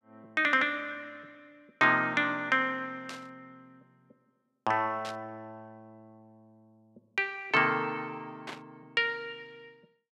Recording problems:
static burst; at 3 s, at 5 s and at 8.5 s; peak -7 dB vs average level

